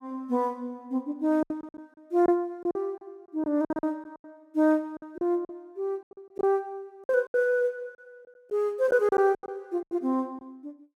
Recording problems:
packet loss; 12% of the sound replaced, filled with silence

